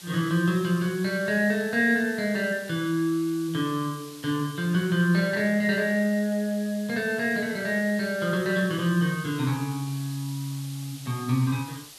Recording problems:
background hiss; SNR 18 dB

